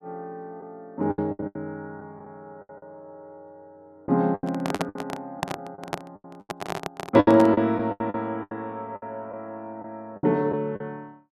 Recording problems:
packet loss; 12% of the sound replaced, filled with the last packet
microphone handling noise; from 4.5 to 7.5 s; peak +3 dB vs average level

